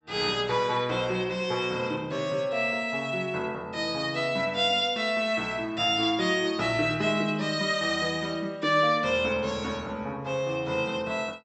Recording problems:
low-pass filter; nothing above 7.9 kHz

